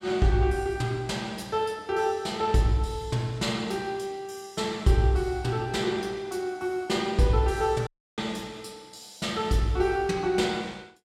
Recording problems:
audio cutting out; at 8 s

